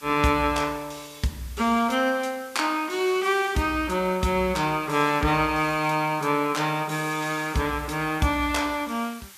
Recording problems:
background hiss; slope +2 dB per octave, SNR 21 dB

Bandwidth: 14.5 kHz